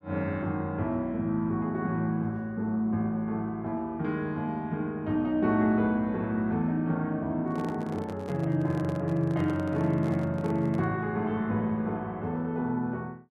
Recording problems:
handling noise; from 7.5 to 11 s; peak -8 dB vs average level

